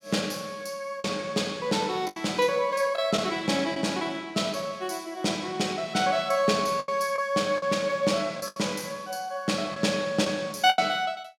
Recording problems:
lost packets; 5% of the sound replaced, filled with the last packet

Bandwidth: 17.5 kHz